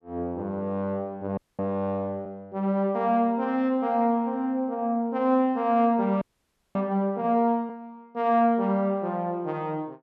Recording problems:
audio freezing; at 1.5 s and at 6 s for 0.5 s

